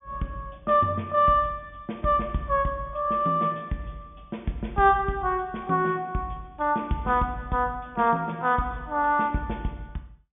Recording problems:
low-pass filter; nothing above 3.5 kHz

